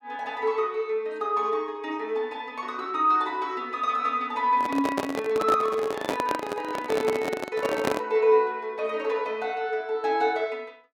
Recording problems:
microphone handling noise; from 4.5 to 8 s; peak +4 dB vs average level

